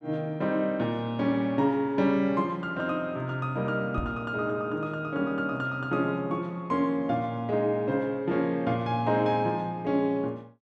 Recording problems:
knock on the microphone; at 4 s; peak -1 dB vs average level

